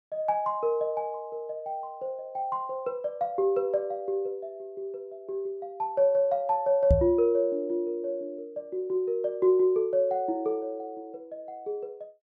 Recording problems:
microphone thump; at 7 s; peak +8 dB vs average level

